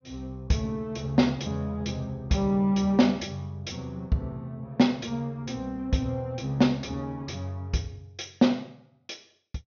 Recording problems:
treble cut off; nothing above 6.5 kHz

